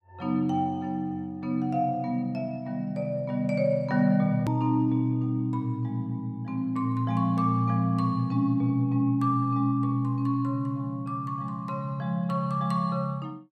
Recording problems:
hard cut with a click; at 4.5 s

